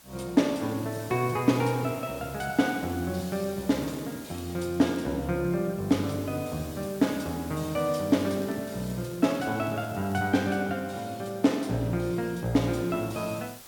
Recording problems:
background hiss; slope -1 dB per octave, SNR 18 dB
crackling; from 2.5 to 5 s, at 7 s and from 8 to 10 s; loose cable, SNR 28 dB

